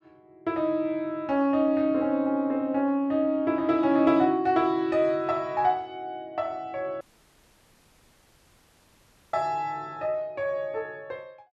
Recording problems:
audio cutting out; at 7 s for 2.5 s

